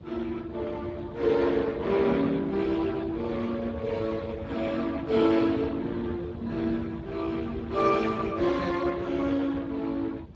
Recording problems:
lossy compression; Speex, log-spectral distance 4 dB
rumble; below 190 Hz, SNR 14 dB

